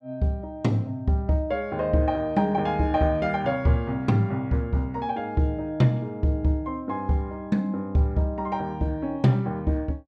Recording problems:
none

